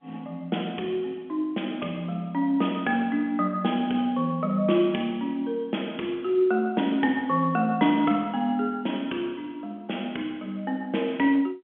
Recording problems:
phone line; 170 Hz to 3.4 kHz, G.711

